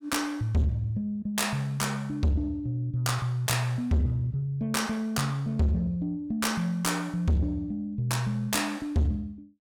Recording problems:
distorted audio; soft clipping, signal-to-distortion ratio 8 dB

